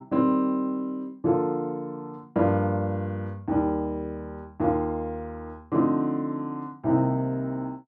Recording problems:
none

